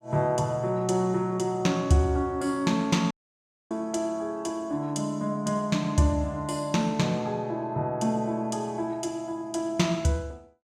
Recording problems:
dropout; at 3 s for 0.5 s

